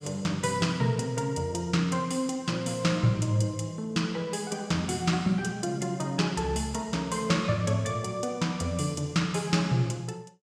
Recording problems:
none

